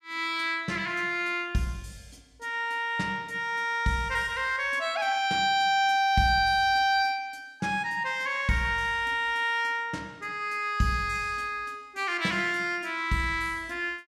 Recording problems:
none

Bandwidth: 14.5 kHz